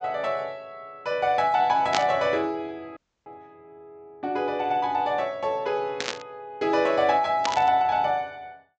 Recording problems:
low-pass filter; nothing above 8 kHz
burst of static; at 2 s, at 6 s and at 7.5 s; peak +2 dB vs average level
dropout; at 3 s

